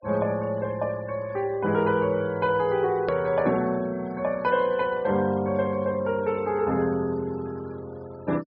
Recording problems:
low-pass filter; nothing above 5.5 kHz
denoising artefacts; signal-to-artefact ratio 24 dB
edit click; at 3 s

